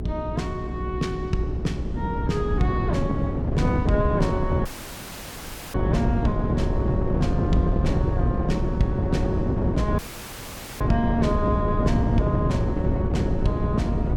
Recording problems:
hum; 60 Hz, harmonics up to 420 Hz, SNR 5 dB
wind on the microphone; below 250 Hz, SNR -3 dB
audio cutting out; at 4.5 s for 1 s and at 10 s for 1 s

